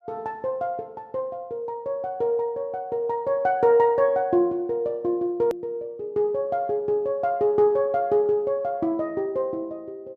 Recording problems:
hard cut with a click; at 5.5 s

